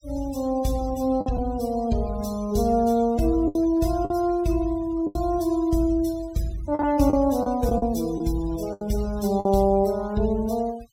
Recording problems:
noise reduction artefacts; signal-to-artefact ratio 20 dB
lost packets; 5% of the sound replaced, filled with the last packet

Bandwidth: 16.5 kHz